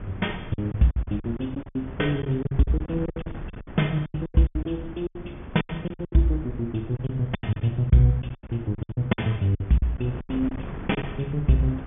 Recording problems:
treble missing; nothing above 3.5 kHz
wind on the microphone; below 270 Hz, SNR 13 dB
packet loss; 17% of the sound replaced, filled with silence

